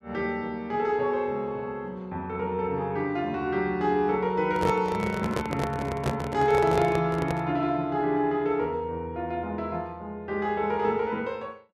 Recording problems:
microphone handling noise; from 4.5 to 7.5 s; peak +2 dB vs average level

